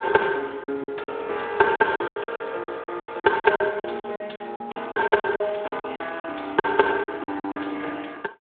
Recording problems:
telephone audio; 260 Hz to 3.5 kHz, Speex
lost packets; 17% of the sound replaced, filled with silence

